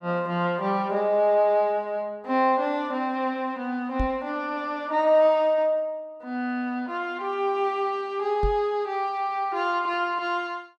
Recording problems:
microphone thump; at 4 s and at 8.5 s; peak 0 dB vs average level

